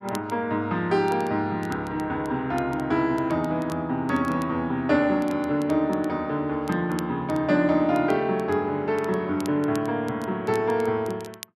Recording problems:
crackling; vinyl, SNR 24 dB

